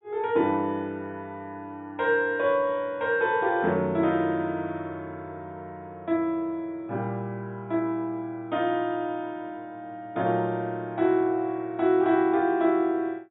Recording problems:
low-pass filter; nothing above 4 kHz

